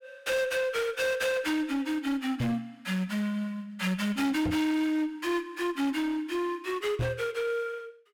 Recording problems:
distortion; hard clipping, uneven, signal-to-distortion ratio 10 dB
microphone bump; at 2.5 s, at 4.5 s and at 7 s; peak +2 dB vs average level

